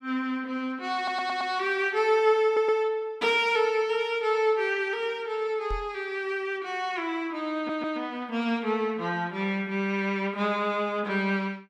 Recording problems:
audio stuttering; at 1 s, at 2.5 s and at 7.5 s
knock on the microphone; at 5.5 s; peak -5 dB vs average level

